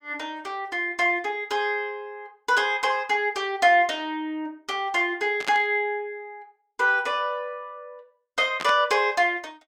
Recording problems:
burst of static; at 5.5 s and at 8.5 s; peak -4 dB vs average level

